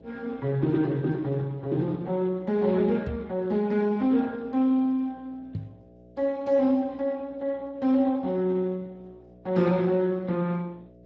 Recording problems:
lossy compression; Speex, log-spectral distance 2 dB
hum; 60 Hz, harmonics up to 660 Hz, SNR 26 dB
microphone thump; at 3 s and at 5.5 s; peak -3 dB vs average level

